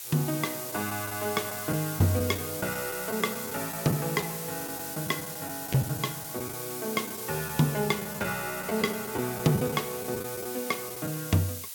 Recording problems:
background hiss; slope +3 dB per octave, SNR 5 dB
packet loss; 6% of the sound replaced, filled with the last packet

